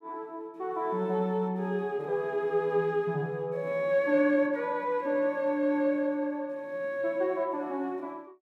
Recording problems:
none

